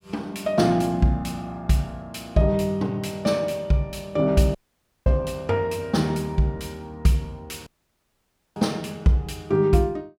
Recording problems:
audio cutting out; at 4.5 s for 0.5 s and at 7.5 s for 1 s

